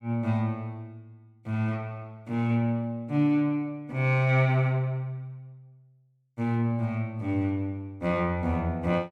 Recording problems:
none

